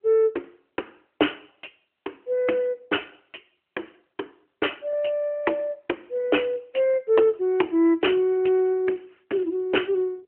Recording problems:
phone line; 260 Hz to 3.2 kHz, AMR-NB

